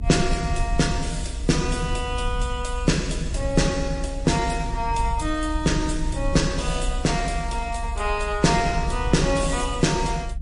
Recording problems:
codec artefacts; MP3, log-spectral distance 3 dB, nothing above 10.4 kHz
rumble; below 62 Hz, strongest tone 36 Hz, SNR 6 dB

